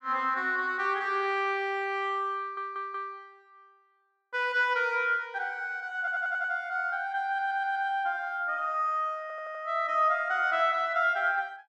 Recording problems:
audio stuttering; 4 times, first at 2.5 s

